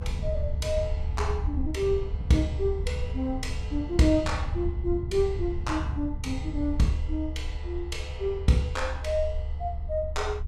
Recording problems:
rumble; below 72 Hz, strongest tone 70 Hz, SNR 6 dB
wind noise; below 110 Hz, SNR 7 dB

